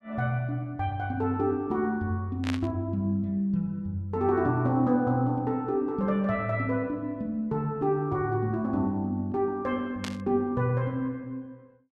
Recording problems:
burst of static; at 2.5 s and at 10 s; peak -2 dB vs average level

